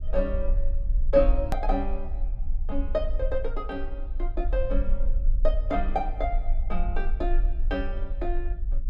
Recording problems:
low-frequency rumble; below 40 Hz, strongest tone 24 Hz, SNR 0 dB
click at an edit; at 1.5 s

